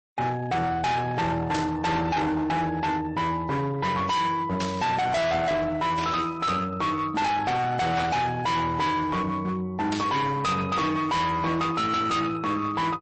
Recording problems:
codec artefacts; MP3, log-spectral distance 2 dB, nothing above 8.2 kHz
distorted audio; hard clipping, signal-to-distortion ratio 6 dB
static burst; 5 times, first at 1.5 s; peak -3 dB vs average level

